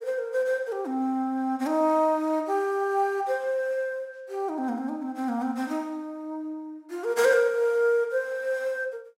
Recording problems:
none

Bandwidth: 16 kHz